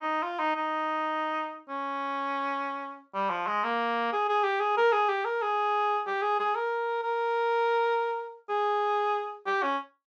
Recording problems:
none

